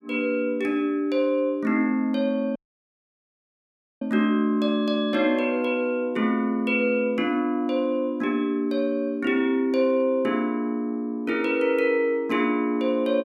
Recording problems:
audio cutting out; at 2.5 s for 1.5 s

